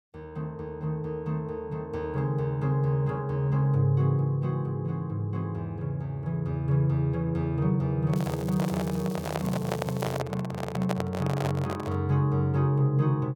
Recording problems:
microphone handling noise; from 8 to 12 s; peak +1 dB vs average level
crackle; from 8 to 10 s; loose cable, SNR 19 dB

